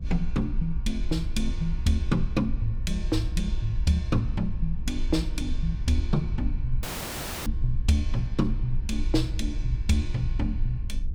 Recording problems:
rumble; below 58 Hz, strongest tone 20 Hz, SNR 3 dB
dropout; at 7 s for 0.5 s

